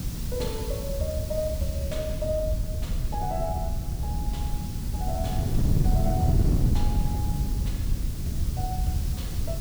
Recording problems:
background hiss; slope +2 dB per octave, SNR 8 dB
rumble; below 68 Hz, SNR 2 dB
wind on the microphone; below 150 Hz, SNR -4 dB

